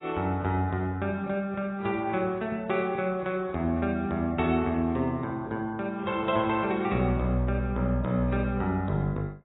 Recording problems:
lossy compression; AAC, log-spectral distance 2 dB, nothing above 3.6 kHz

